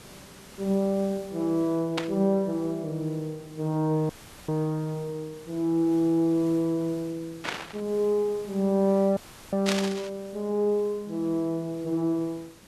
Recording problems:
background hiss; slope -3 dB per octave, SNR 22 dB
burst of static; at 2 s, at 7.5 s and at 9.5 s; peak +4 dB vs average level
audio cutting out; at 4 s and at 9 s; filled with static

